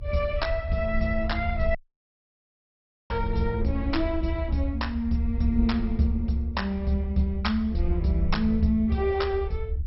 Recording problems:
lossy codec; MP2, log-spectral distance 2 dB, nothing above 5.5 kHz
rumble; below 78 Hz, SNR 5 dB
audio cutting out; at 2 s for 1.5 s

